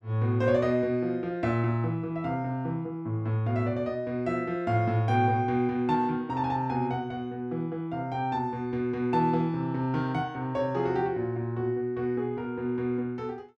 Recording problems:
none

